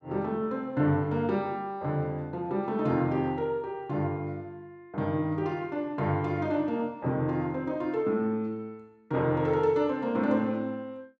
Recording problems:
none

